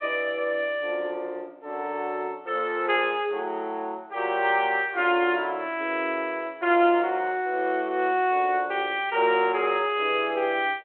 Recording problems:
phone line; 260 Hz to 3.3 kHz, G.726

